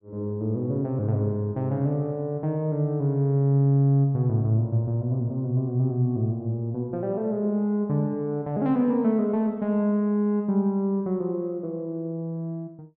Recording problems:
none

